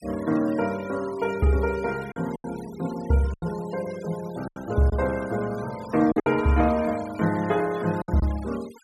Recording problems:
noise reduction artefacts; signal-to-artefact ratio 19 dB
packet loss; 6% of the sound replaced, filled with silence

